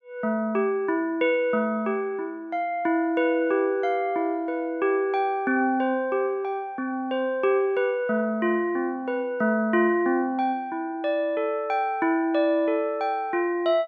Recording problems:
none

